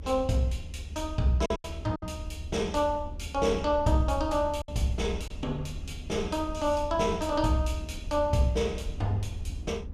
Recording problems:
low-frequency rumble; below 80 Hz, SNR 10 dB
packet loss; 3% of the sound replaced, filled with silence

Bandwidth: 14.5 kHz